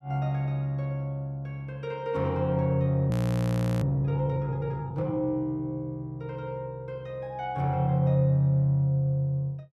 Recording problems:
frozen audio; at 3 s for 0.5 s

